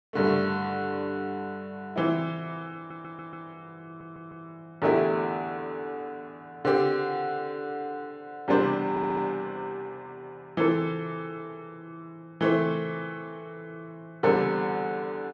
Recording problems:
audio stuttering; at 3 s, at 4 s and at 9 s

